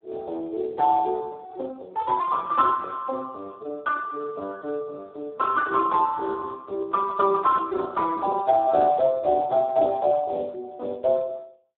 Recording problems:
telephone audio; 340 Hz to 2.1 kHz, Speex

